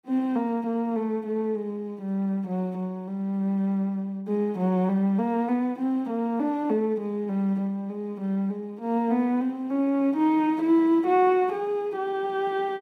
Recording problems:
none

